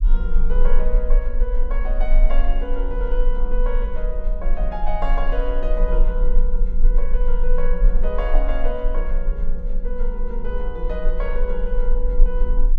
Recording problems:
rumble; below 32 Hz, strongest tone 18 Hz, SNR -6 dB

